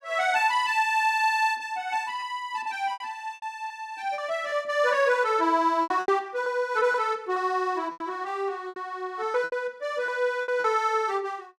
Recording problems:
packet loss; 8% of the sound replaced, filled with repeated pitch periods

